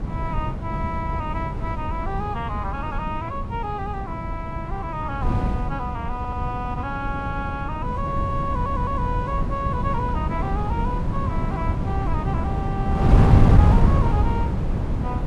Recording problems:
lossy codec; Vorbis, log-spectral distance 2 dB
wind on the microphone; below 180 Hz, SNR -5 dB
audio stuttering; at 6 s and at 8.5 s

